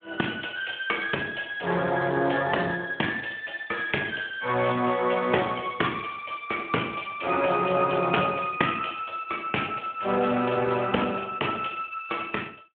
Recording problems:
phone line; 220 Hz to 3.3 kHz, Speex

